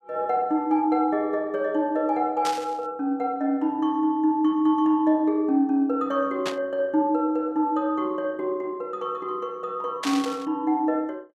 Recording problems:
burst of static; at 2.5 s, at 6.5 s and at 10 s; peak -2 dB vs average level

